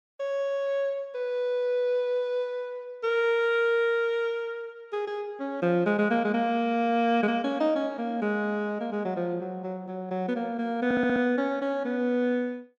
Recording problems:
audio stuttering; at 11 s

